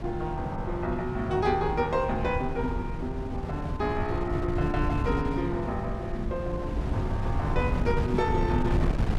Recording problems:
wind on the microphone; below 160 Hz, SNR 2 dB

